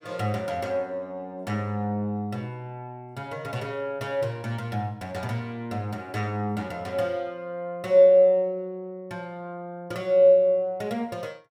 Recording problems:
none

